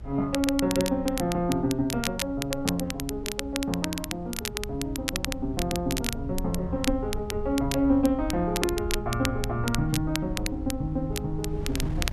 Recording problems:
rumble; below 92 Hz, SNR 10 dB
wind on the microphone; below 220 Hz, SNR 20 dB
crackling; vinyl, SNR 6 dB

